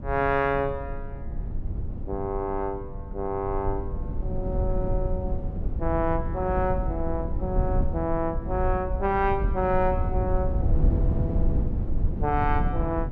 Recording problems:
rumble; below 100 Hz, SNR 1 dB

